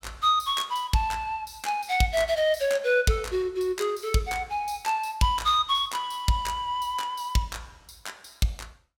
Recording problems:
none

